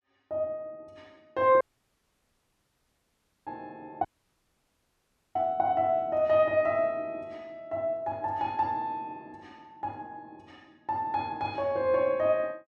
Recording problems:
audio cutting out; at 1.5 s for 2 s and at 4 s for 1.5 s

